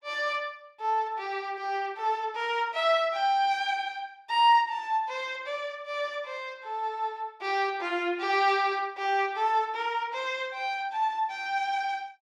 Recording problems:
none

